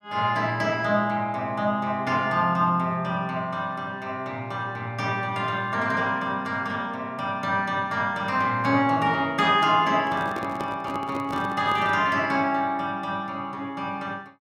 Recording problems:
microphone handling noise; from 10 to 12 s; peak -5 dB vs average level

